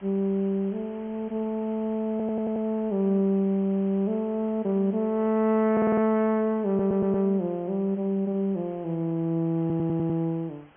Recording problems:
treble cut off; nothing above 3.3 kHz
hiss; SNR 27 dB
stutter; 4 times, first at 2 s

